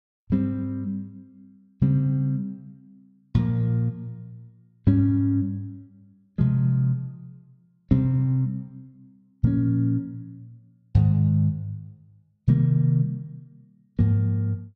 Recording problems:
none

